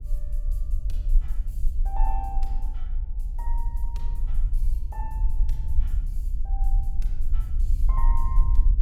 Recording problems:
low-frequency rumble; below 42 Hz, SNR -13 dB

